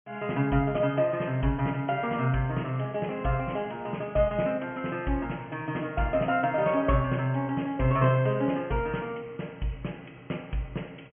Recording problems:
low-pass filter; nothing above 3.2 kHz

